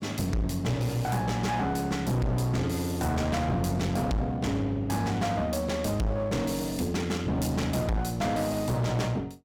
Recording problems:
distortion; hard clipping, uneven, signal-to-distortion ratio 5 dB

